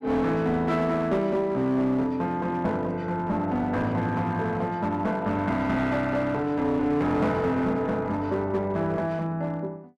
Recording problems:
distortion; hard clipping, uneven, signal-to-distortion ratio 11 dB

